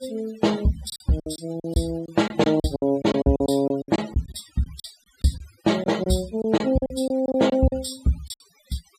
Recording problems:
denoising artefacts; signal-to-artefact ratio 19 dB
lost packets; 14% of the sound replaced, filled with silence

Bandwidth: 15 kHz